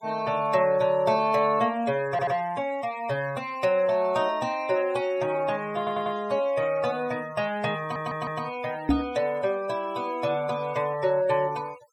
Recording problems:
noise reduction artefacts; signal-to-artefact ratio 22 dB
stutter; at 2 s, at 6 s and at 8 s
knock on the microphone; at 9 s; peak +7 dB vs average level

